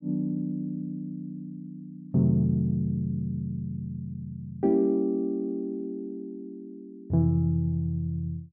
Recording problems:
none

